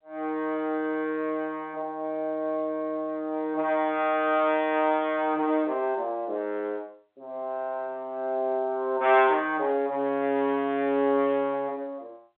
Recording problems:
phone line; 220 Hz to 3.7 kHz, G.711

